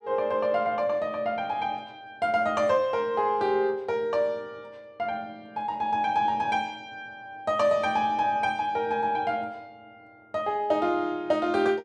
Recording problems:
none

